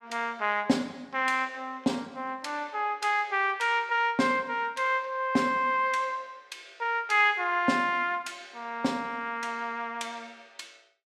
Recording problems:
none

